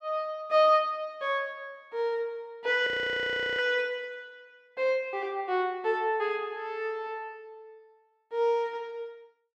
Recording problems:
frozen audio; at 3 s for 0.5 s

